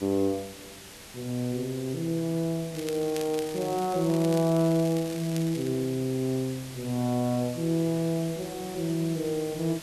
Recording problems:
background hiss; slope -2 dB per octave, SNR 15 dB
crackle; from 3 to 5.5 s; loose cable, SNR 15 dB

